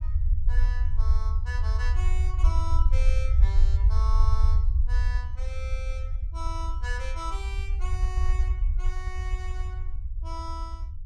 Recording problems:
low-frequency rumble; below 66 Hz, SNR -12 dB

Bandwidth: 15 kHz